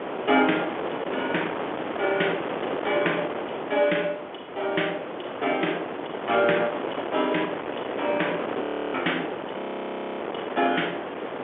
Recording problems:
phone line; 240 Hz to 3.5 kHz, G.711
wind on the microphone; below 1.1 kHz, SNR 4 dB
audio freezing; at 8.5 s and at 9.5 s for 0.5 s

